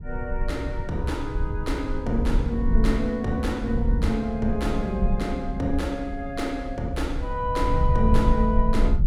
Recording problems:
rumble; below 72 Hz, SNR 1 dB

